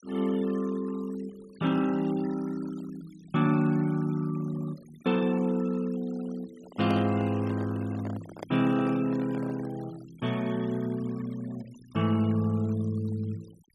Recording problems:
noise reduction artefacts; signal-to-artefact ratio 22 dB
handling noise; from 6.5 to 10 s; peak -5 dB vs average level

